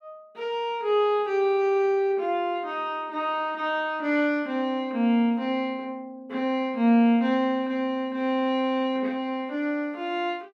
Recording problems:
none

